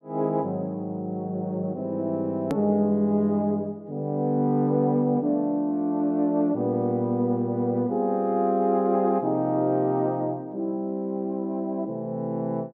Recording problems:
hard cut with a click; at 2.5 s

